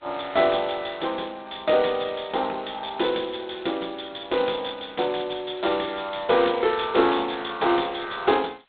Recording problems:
telephone audio; 300 Hz to 3.7 kHz, G.726

